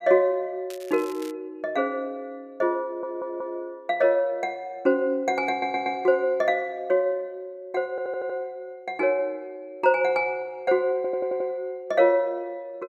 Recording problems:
crackling; at 0.5 s; loose cable, SNR 21 dB
audio stuttering; 4 times, first at 3 s

